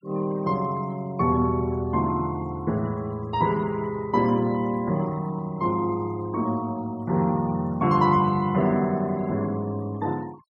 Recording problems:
denoising artefacts; signal-to-artefact ratio 25 dB

